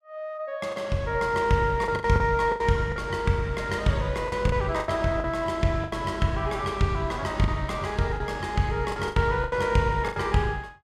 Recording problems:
lost packets; 9% of the sound replaced, filled with the last packet

